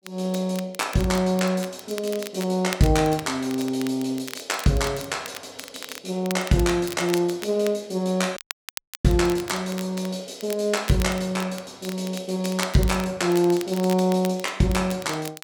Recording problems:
crackling; vinyl, SNR 14 dB
dropout; at 8.5 s for 0.5 s

